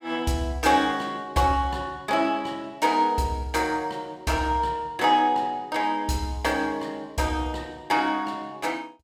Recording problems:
none

